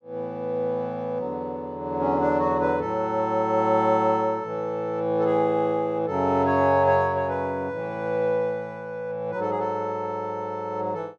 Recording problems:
none

